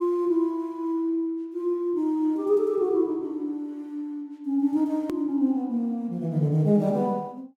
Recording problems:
hard cut with a click; at 5 s

